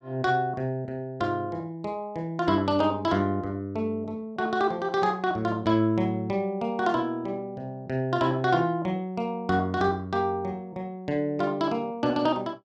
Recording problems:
none

